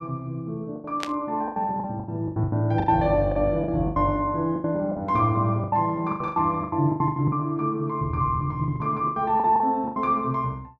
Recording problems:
packet loss; 15% of the sound replaced, filled with the last packet
static burst; at 1 s; peak -2 dB vs average level

